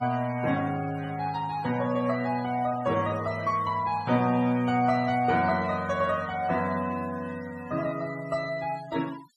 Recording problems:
noise reduction artefacts; signal-to-artefact ratio 18 dB

